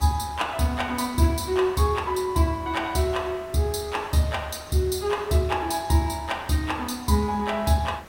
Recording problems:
hiss; slope -5 dB per octave, SNR 20 dB

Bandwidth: 16.5 kHz